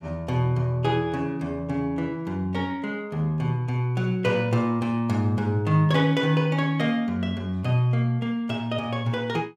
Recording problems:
none

